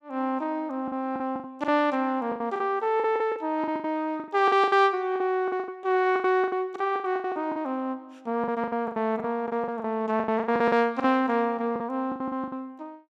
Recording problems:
packet loss; 17% of the sound replaced, filled with the last packet

